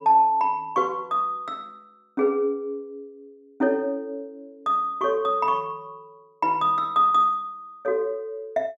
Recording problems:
none

